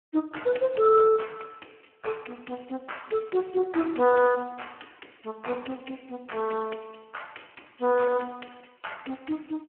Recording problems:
telephone audio; 260 Hz to 3.1 kHz, Speex

